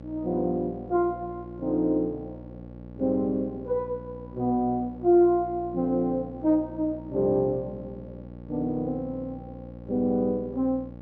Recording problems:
hum; 60 Hz, harmonics up to 1.1 kHz, SNR 16 dB

